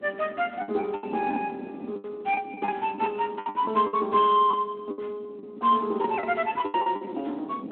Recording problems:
telephone audio; 220 Hz to 3.7 kHz, Speex
wind noise; below 370 Hz, SNR 16 dB
lost packets; 14% of the sound replaced, filled with the last packet

